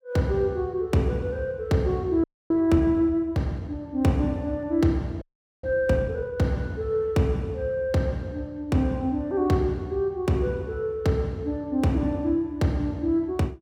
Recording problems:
audio freezing; at 2 s and at 5 s

